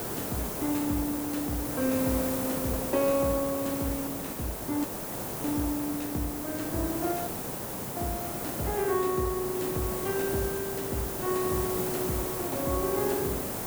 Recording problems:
hiss; SNR 1 dB
audio cutting out; at 5 s for 0.5 s and at 7.5 s for 0.5 s

